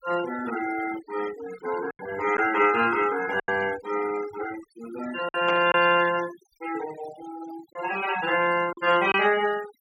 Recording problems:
noise reduction artefacts; signal-to-artefact ratio 13 dB
lost packets; 3% of the sound replaced, filled with silence
static burst; at 5.5 s; peak -3 dB vs average level

